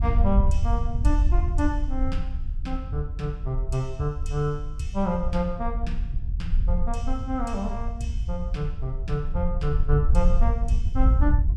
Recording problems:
wind noise; below 64 Hz, SNR -3 dB

